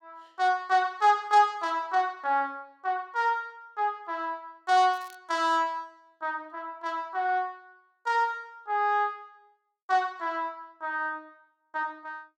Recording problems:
crackling; at 5 s; loose cable, SNR 28 dB

